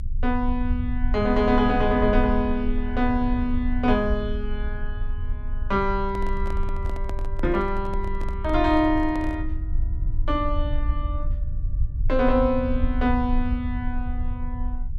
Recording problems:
rumble; below 62 Hz, strongest tone 22 Hz, SNR 5 dB
microphone handling noise; from 6 to 9.5 s; peak -8 dB vs average level

